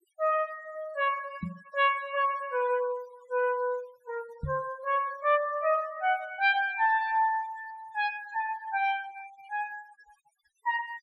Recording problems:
noise reduction artefacts; signal-to-artefact ratio 22 dB
microphone bump; at 1.5 s and at 4.5 s; peak -2 dB vs average level

